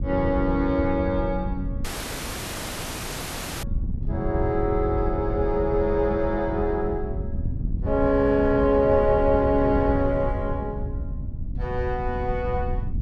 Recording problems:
wind on the microphone; below 110 Hz, SNR 7 dB
audio cutting out; at 2 s for 2 s

